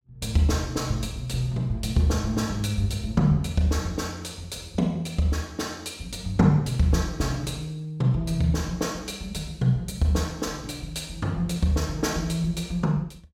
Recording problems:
none

